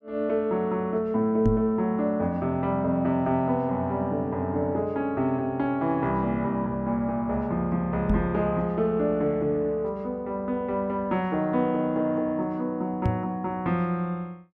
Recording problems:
knock on the microphone; at 1.5 s, at 8 s and at 13 s; peak +5 dB vs average level

